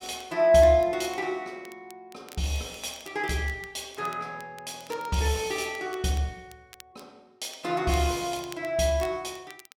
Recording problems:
crackling; vinyl, SNR 24 dB

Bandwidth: 16.5 kHz